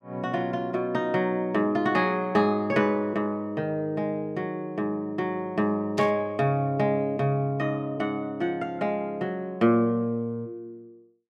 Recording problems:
burst of static; at 6 s; peak -7 dB vs average level

